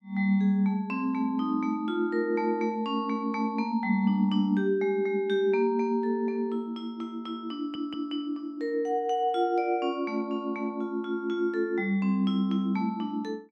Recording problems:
audio stuttering; at 7.5 s

